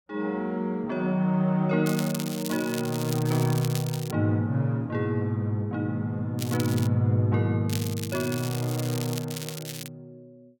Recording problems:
crackle; from 2 to 4 s, at 6.5 s and from 7.5 to 10 s; loose cable, SNR 11 dB

